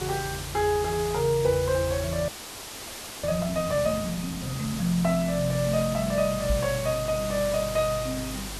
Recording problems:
hum; 50 Hz, harmonics up to 450 Hz, SNR 16 dB
hiss; slope -2 dB per octave, SNR 9 dB
frozen audio; at 2.5 s for 1 s
knock on the microphone; at 6.5 s; peak +2 dB vs average level

